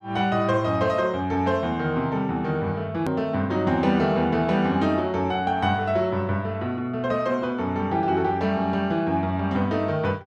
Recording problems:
hard cut with a click; at 3 s

